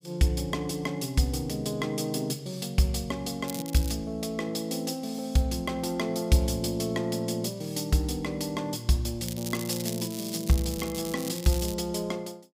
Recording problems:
crackling; at 3.5 s and from 9 to 12 s; loose cable, SNR 9 dB

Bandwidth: 15.5 kHz